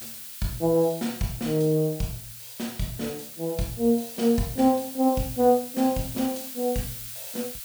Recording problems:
background hiss; SNR 11 dB

